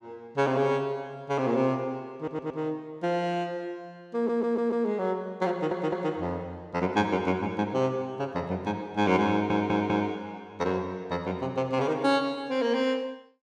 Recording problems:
audio stuttering; 4 times, first at 2 s

